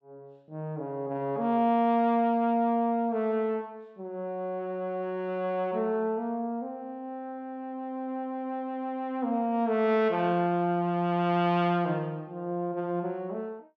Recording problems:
none

